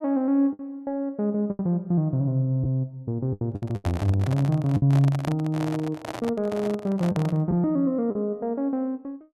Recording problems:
lost packets; 5% of the sound replaced, filled with the last packet
microphone handling noise; from 3.5 to 7.5 s; peak -5 dB vs average level

